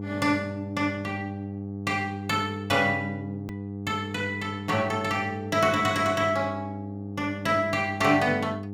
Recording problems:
hum; 50 Hz, harmonics up to 800 Hz, SNR 9 dB
hard cut with a click; at 3.5 s

